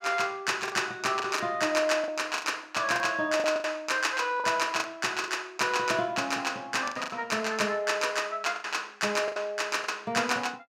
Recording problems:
packet loss; 8% of the sound replaced, filled with the last packet

